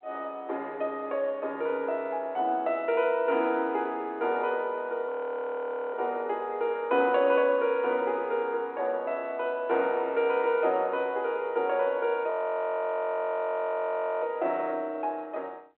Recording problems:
telephone audio; 260 Hz to 3.3 kHz, G.726
audio freezing; at 5 s for 1 s and at 12 s for 2 s

